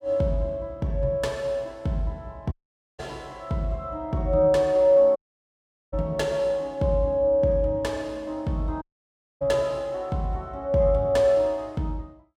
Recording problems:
dropout; at 2.5 s, at 5 s for 1 s and at 9 s for 0.5 s

